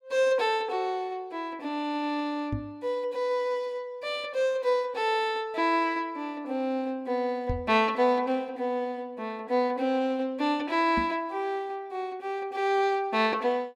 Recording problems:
knock on the microphone; at 2.5 s, at 7.5 s and at 11 s; peak 0 dB vs average level

